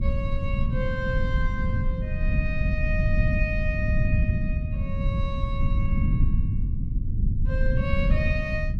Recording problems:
rumble; below 120 Hz, SNR -7 dB

